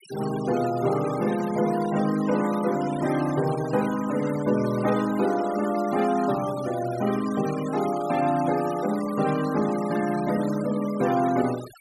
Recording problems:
denoising artefacts; signal-to-artefact ratio 15 dB

